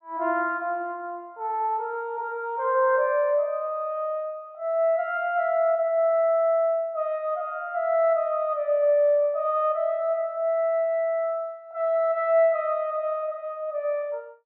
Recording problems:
none

